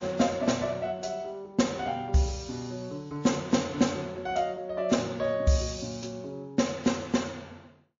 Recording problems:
lossy compression; MP3, log-spectral distance 4 dB, nothing above 6.5 kHz

